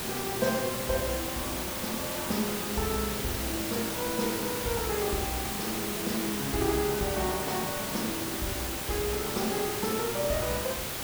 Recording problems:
hiss; slope -2 dB per octave, SNR 0 dB

